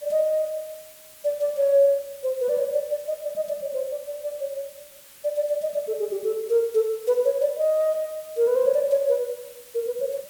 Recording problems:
hiss; slope +1 dB per octave, SNR 21 dB

